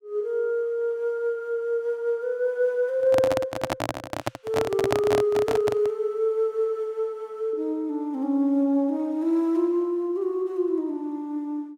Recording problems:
microphone handling noise; from 3 to 6 s; peak +4 dB vs average level

